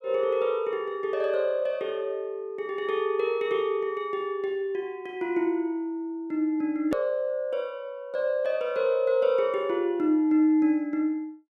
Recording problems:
hard cut with a click; at 7 s

